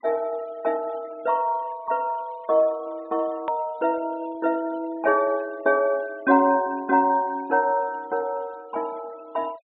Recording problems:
low-pass filter; nothing above 4 kHz
denoising artefacts; signal-to-artefact ratio 27 dB
hard cut with a click; at 3.5 s

